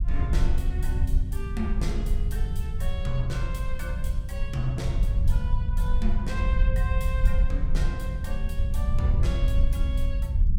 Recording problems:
rumble; below 68 Hz, SNR -7 dB

